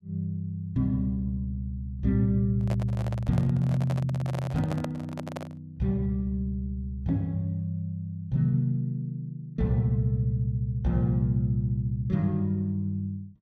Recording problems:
microphone handling noise; from 2.5 to 5.5 s; peak -3 dB vs average level

